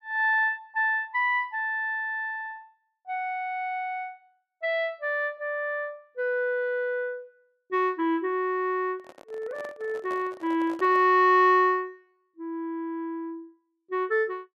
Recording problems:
microphone handling noise; from 9 to 11 s; peak -12 dB vs average level

